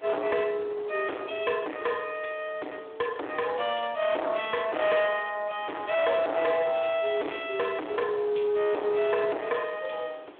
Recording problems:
phone line; 260 Hz to 3.7 kHz, Speex
distorted audio; hard clipping, signal-to-distortion ratio 7 dB
hiss; SNR 29 dB
wind on the microphone; below 1.1 kHz, SNR 21 dB

